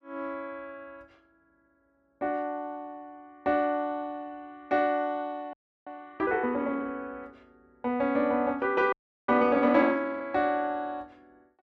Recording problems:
frozen audio; at 5.5 s and at 9 s

